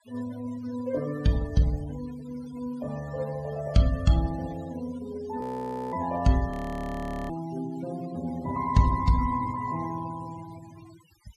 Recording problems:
denoising artefacts; signal-to-artefact ratio 17 dB
audio freezing; at 5.5 s for 0.5 s and at 6.5 s for 1 s

